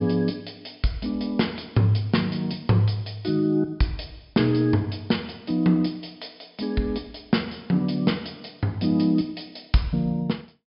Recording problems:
low-pass filter; nothing above 5.5 kHz

